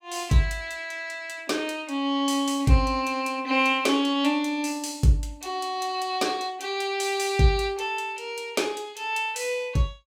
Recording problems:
none

